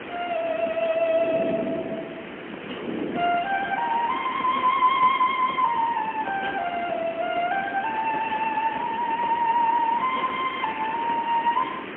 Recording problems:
phone line; 280 Hz to 3.2 kHz, AMR-NB, then MP3
hiss; SNR 13 dB
wind noise; below 460 Hz, SNR 12 dB

